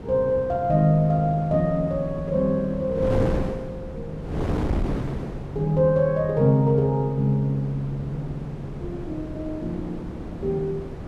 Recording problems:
wind on the microphone; below 390 Hz, SNR 9 dB

